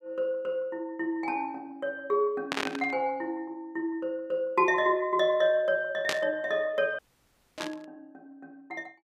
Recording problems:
burst of static; at 2.5 s, at 6 s and at 7.5 s; peak +4 dB vs average level
audio cutting out; at 7 s for 0.5 s

